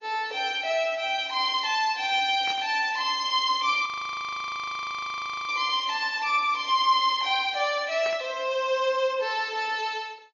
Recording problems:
lossy compression; MP3, then MP3, log-spectral distance 3 dB, nothing above 6.2 kHz
burst of static; at 2.5 s and at 8 s; peak -8 dB vs average level
audio freezing; at 4 s for 1.5 s

